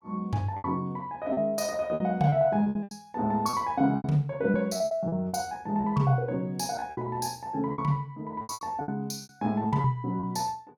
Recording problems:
packet loss; 12% of the sound replaced, filled with repeated pitch periods

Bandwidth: 17.5 kHz